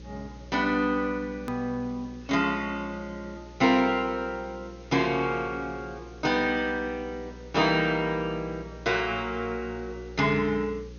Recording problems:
treble missing; nothing above 6.7 kHz
hum; 60 Hz, harmonics up to 540 Hz, SNR 19 dB
background hiss; SNR 29 dB
edit click; at 1.5 s

